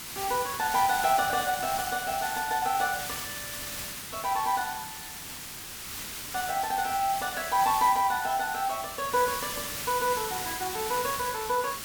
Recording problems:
background hiss; slope 0 dB per octave, SNR 6 dB

